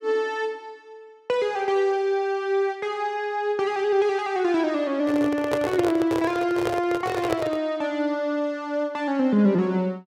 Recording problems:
handling noise; from 5 to 7.5 s; peak +2 dB vs average level

